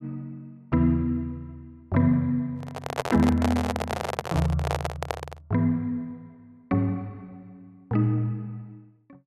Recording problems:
microphone handling noise; from 2.5 to 5.5 s; peak +3 dB vs average level

